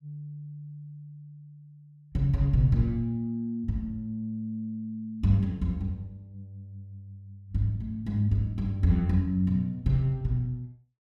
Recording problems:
none

